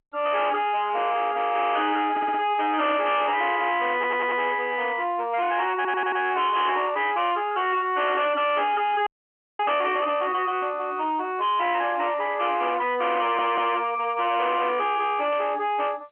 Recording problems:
telephone audio; 260 Hz to 3.5 kHz, G.711
distortion; soft clipping, signal-to-distortion ratio 6 dB
audio stuttering; 4 times, first at 2 s
burst of static; at 7 s and at 15 s; peak -14 dB vs average level
audio freezing; at 9 s for 0.5 s

